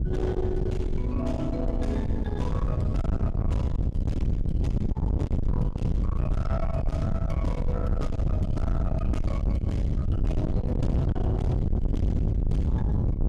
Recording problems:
distortion; soft clipping, signal-to-distortion ratio 8 dB
wind on the microphone; below 140 Hz, SNR -6 dB

